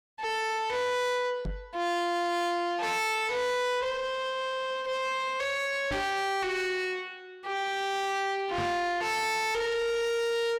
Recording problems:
distorted audio; soft clipping, signal-to-distortion ratio 6 dB
microphone thump; at 1.5 s, at 6 s and at 8.5 s; peak -1 dB vs average level

